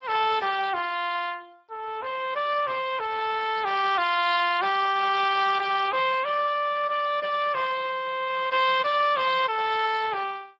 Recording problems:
lossy compression; MP3, then Speex, log-spectral distance 4 dB

